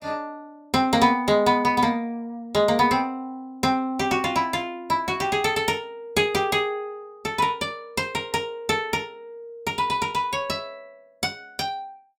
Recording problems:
none

